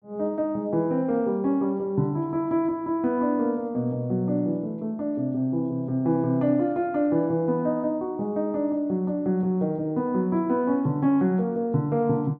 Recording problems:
none

